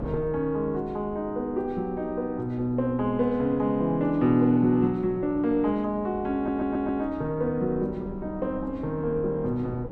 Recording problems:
hum; 60 Hz, harmonics up to 1.3 kHz, SNR 27 dB
wind on the microphone; below 370 Hz, SNR 18 dB
stutter; at 6.5 s

